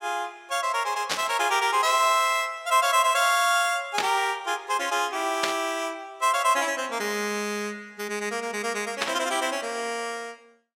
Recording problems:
burst of static; 4 times, first at 1 s; peak +4 dB vs average level

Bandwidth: 16 kHz